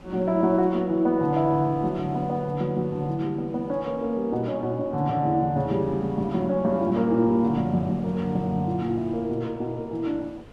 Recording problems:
wind on the microphone; below 620 Hz, SNR 22 dB

